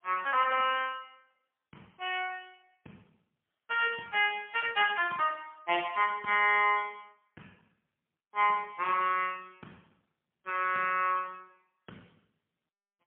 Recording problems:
phone line; 300 Hz to 3.2 kHz, AMR-NB, then MP3

